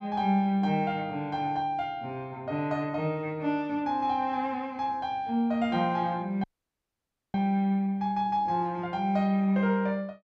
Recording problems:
audio cutting out; at 6.5 s for 1 s

